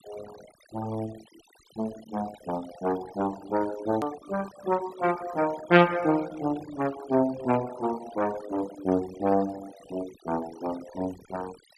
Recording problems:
denoising artefacts; signal-to-artefact ratio 17 dB
edit click; at 4 s

